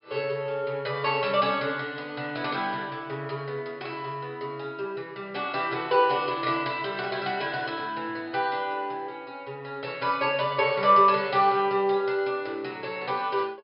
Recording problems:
low-pass filter; nothing above 5.5 kHz

